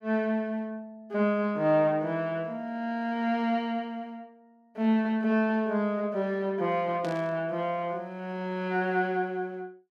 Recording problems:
static burst; at 7 s; peak -11 dB vs average level

